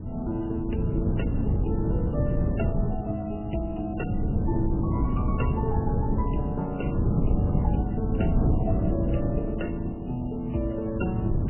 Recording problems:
lossy codec; MP3, then MP3, log-spectral distance 2 dB, nothing above 2.8 kHz
wind on the microphone; below 180 Hz, SNR -2 dB

